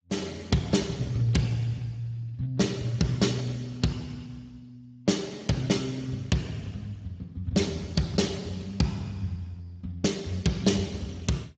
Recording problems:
lossy codec; Speex, log-spectral distance 4 dB, nothing above 7.3 kHz

